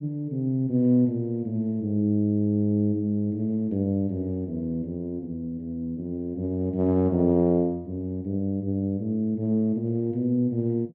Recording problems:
none

